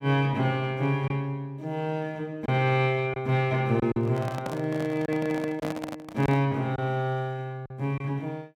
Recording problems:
lost packets; 3% of the sound replaced, filled with silence
handling noise; from 4 to 6.5 s; peak -2 dB vs average level

